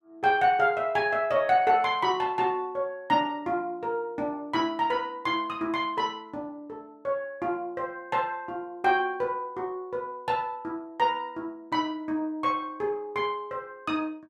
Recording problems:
none

